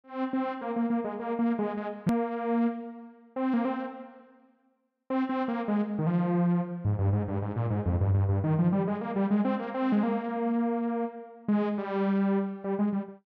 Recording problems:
hard cut with a click; at 2 s

